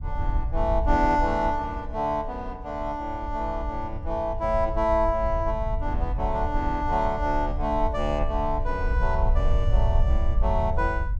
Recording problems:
wind on the microphone; below 64 Hz, SNR 3 dB

